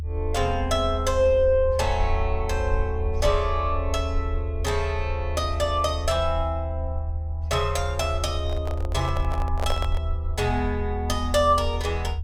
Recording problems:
rumble; below 80 Hz, strongest tone 78 Hz, SNR 3 dB
microphone handling noise; from 8.5 to 10 s; peak +1 dB vs average level

